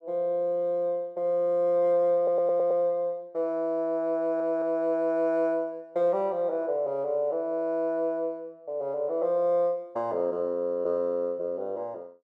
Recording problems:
stutter; at 2 s and at 4 s

